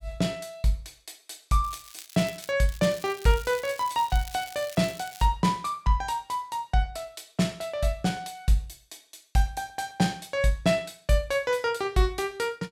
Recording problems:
crackle; at 1.5 s and from 2.5 to 5.5 s; loose cable, SNR 17 dB

